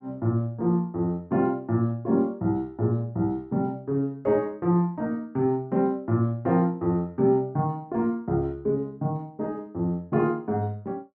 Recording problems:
none

